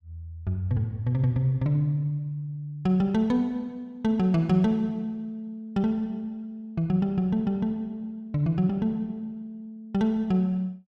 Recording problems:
none

